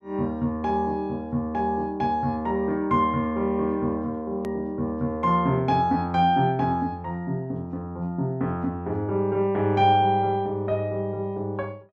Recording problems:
hard cut with a click; at 4.5 s

